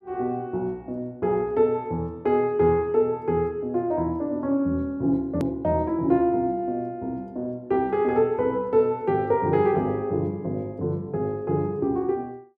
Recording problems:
edit click; at 5.5 s

